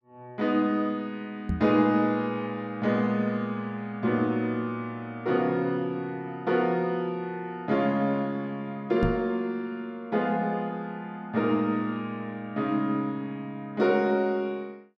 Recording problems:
microphone bump; at 1.5 s and at 9 s; peak +4 dB vs average level

